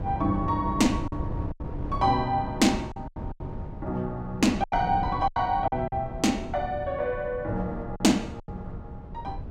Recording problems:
wind noise; below 180 Hz, SNR 10 dB
packet loss; 7% of the sound replaced, filled with silence

